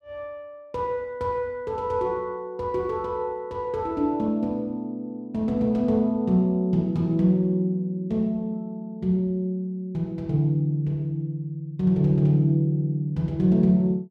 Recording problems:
none

